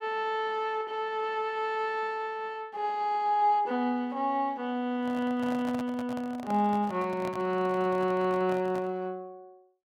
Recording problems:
microphone handling noise; from 5 to 9 s; peak -7 dB vs average level

